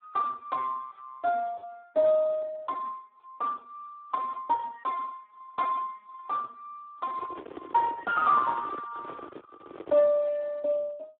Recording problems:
telephone audio; 240 Hz to 2.1 kHz, Speex
handling noise; from 7 to 10 s; peak -7 dB vs average level

